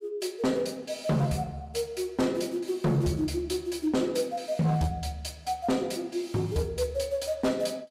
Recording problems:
distorted audio; hard clipping, signal-to-distortion ratio 11 dB

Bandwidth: 15.5 kHz